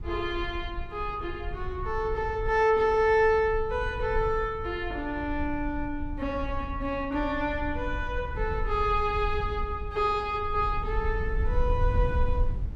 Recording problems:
low-frequency rumble; below 70 Hz, SNR 7 dB

